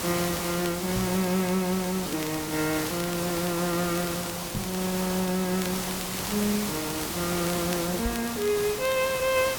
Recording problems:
hiss; slope -3 dB per octave, SNR 3 dB
crackle; vinyl, SNR 16 dB
knock on the microphone; at 1 s, at 4.5 s and at 8 s; peak -1 dB vs average level

